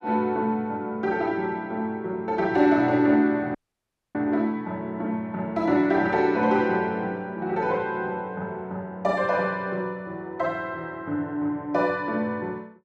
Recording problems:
dropout; at 3.5 s for 0.5 s

